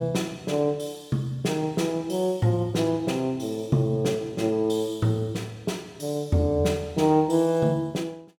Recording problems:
none

